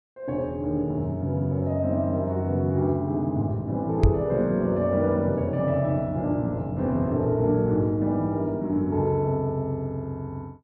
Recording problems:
microphone bump; at 4 s; peak +8 dB vs average level

